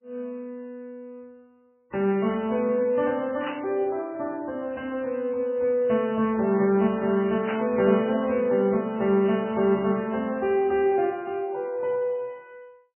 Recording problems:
lossy compression; MP3, log-spectral distance 2 dB, nothing above 2.4 kHz
burst of static; at 3.5 s and at 7.5 s; peak -5 dB vs average level

